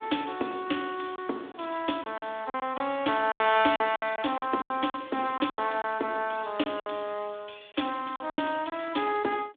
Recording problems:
phone line; 240 Hz to 3.6 kHz, Speex
lost packets; 9% of the sound replaced, filled with silence

